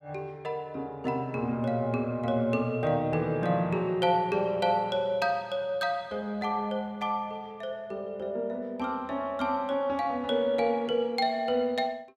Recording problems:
none

